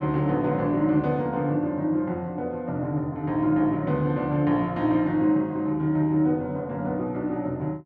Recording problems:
none

